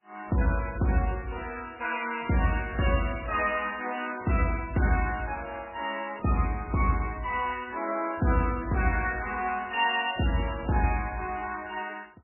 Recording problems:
lossy codec; MP2, then MP3, log-spectral distance 6 dB, nothing above 2.8 kHz

